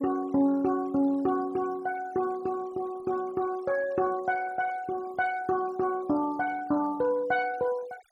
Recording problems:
noise reduction artefacts; signal-to-artefact ratio 23 dB

